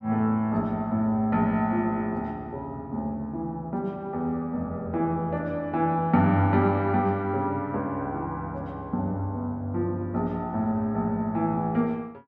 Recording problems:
none

